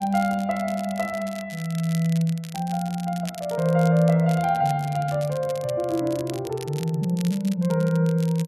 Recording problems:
crackling; vinyl, SNR 18 dB

